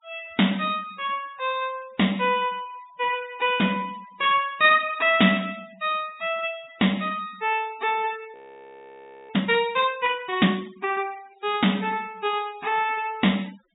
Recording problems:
low-pass filter; nothing above 4 kHz
noise reduction artefacts; signal-to-artefact ratio 24 dB
frozen audio; at 8.5 s for 1 s

